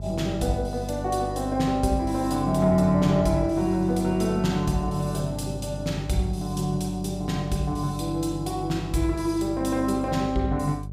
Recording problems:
hum; 50 Hz, harmonics up to 450 Hz, SNR 10 dB

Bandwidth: 15.5 kHz